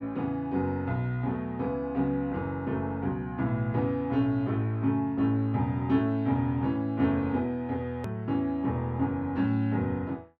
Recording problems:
hard cut with a click; at 8 s

